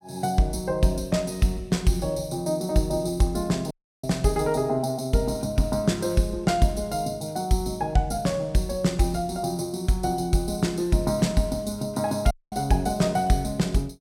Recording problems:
audio cutting out; at 3.5 s and at 12 s

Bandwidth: 16 kHz